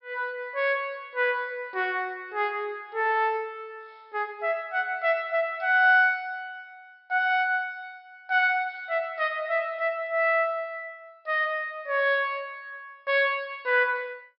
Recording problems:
treble cut off; nothing above 5.3 kHz

